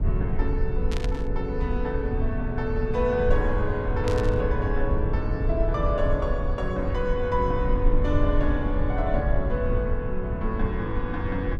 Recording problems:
low-frequency rumble; below 72 Hz, SNR 1 dB
burst of static; at 1 s and at 4 s; peak -4 dB vs average level

